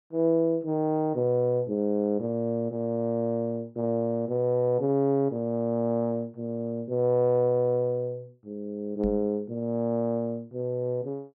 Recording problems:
knock on the microphone; at 9 s; peak -4 dB vs average level

